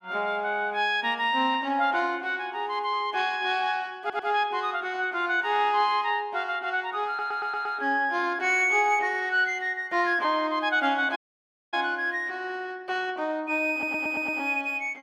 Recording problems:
audio stuttering; at 4 s, at 7 s and at 14 s
dropout; at 11 s for 0.5 s

